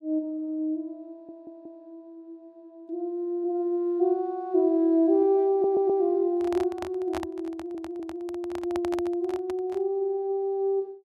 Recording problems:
stutter; at 1 s, at 5.5 s and at 7.5 s
microphone handling noise; from 6.5 to 10 s; peak -4 dB vs average level

